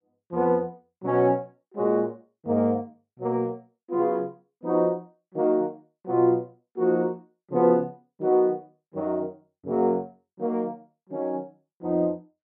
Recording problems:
none

